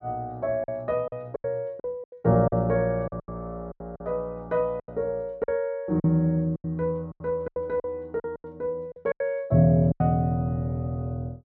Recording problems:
treble cut off; nothing above 7.3 kHz
packet loss; 12% of the sound replaced, filled with silence

